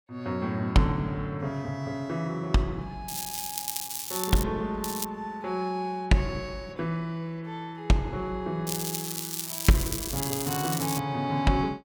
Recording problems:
crackling; from 3 to 4.5 s, at 5 s and from 8.5 to 11 s; loose cable, SNR 3 dB

